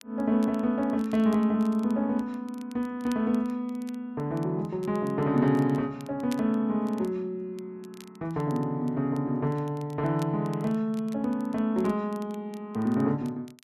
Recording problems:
crackling; vinyl, SNR 27 dB

